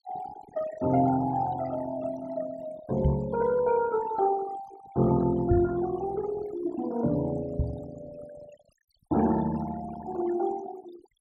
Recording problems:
denoising artefacts; signal-to-artefact ratio 16 dB
microphone bump; at 3 s, at 5.5 s and at 7.5 s; peak +6 dB vs average level

